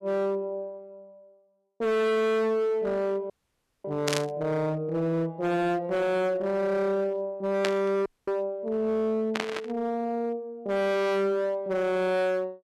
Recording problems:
distortion; hard clipping, signal-to-distortion ratio 6 dB
dropout; at 3.5 s for 0.5 s and at 8 s
static burst; at 4 s, at 7.5 s and at 9.5 s; peak +3 dB vs average level

